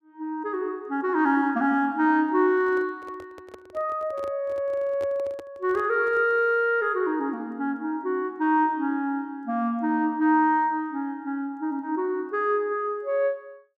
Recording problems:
microphone handling noise; from 2.5 to 6.5 s; peak -12 dB vs average level

